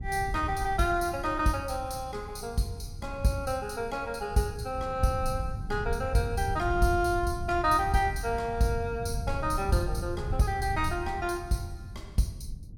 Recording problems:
wind noise; below 110 Hz, SNR 8 dB

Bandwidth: 17 kHz